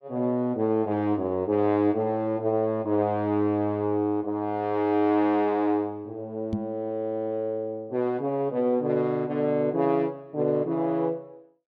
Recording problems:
microphone bump; at 6.5 s; peak 0 dB vs average level

